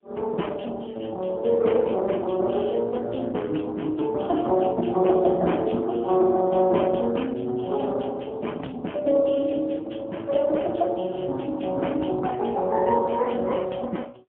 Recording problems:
telephone audio; 170 Hz to 3.2 kHz, AMR-NB, then MP3

